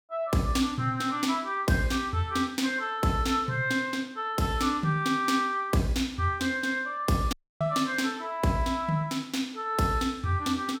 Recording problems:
audio cutting out; at 7.5 s

